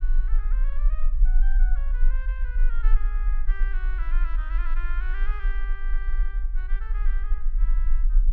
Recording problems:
rumble; below 36 Hz, strongest tone 26 Hz, SNR -15 dB

